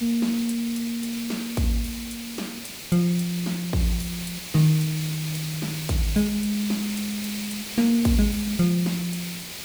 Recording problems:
background hiss; SNR 8 dB

